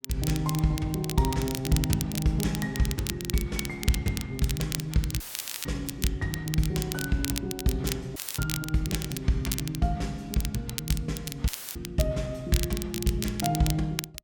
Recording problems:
crackling; vinyl, SNR 7 dB
dropout; at 5 s, at 8 s and at 11 s; filled with static

